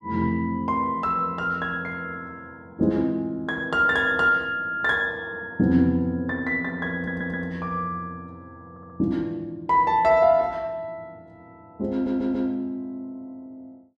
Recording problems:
audio stuttering; at 7 s, at 8.5 s and at 12 s

